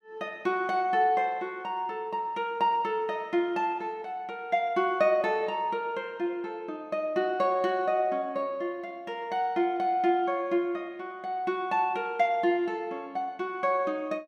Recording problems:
none

